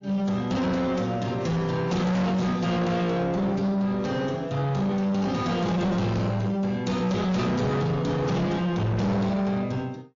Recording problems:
lossy compression; MP3, log-spectral distance 2 dB, nothing above 6.9 kHz
distortion; soft clipping, signal-to-distortion ratio 7 dB

